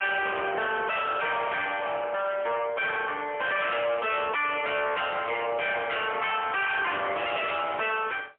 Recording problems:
phone line; 340 Hz to 3.4 kHz, AMR-NB, then MP3
distorted audio; hard clipping, uneven, signal-to-distortion ratio 5 dB

